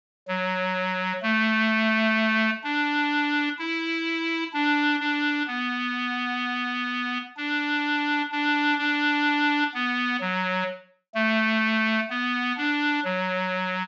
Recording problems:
treble missing; nothing above 7.5 kHz

